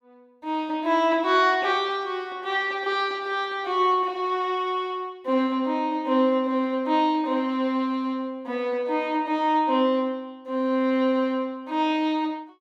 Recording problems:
none

